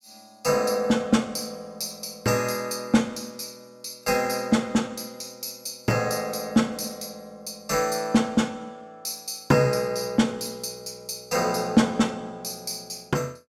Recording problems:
none

